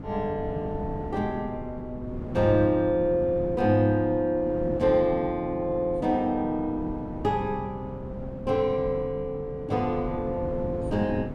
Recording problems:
wind on the microphone; below 270 Hz, SNR 11 dB

